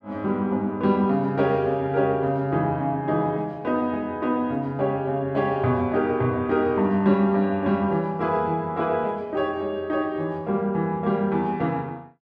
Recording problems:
none

